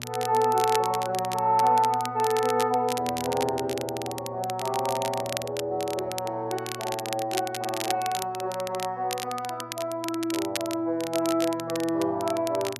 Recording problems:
hum; 60 Hz, harmonics up to 960 Hz, SNR 18 dB
crackling; vinyl, SNR 10 dB

